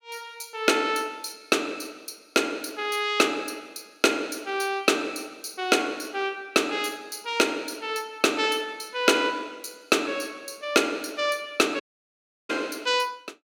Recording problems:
audio cutting out; at 12 s for 0.5 s

